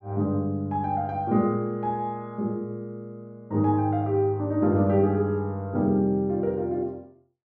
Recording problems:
treble cut off; nothing above 7.1 kHz

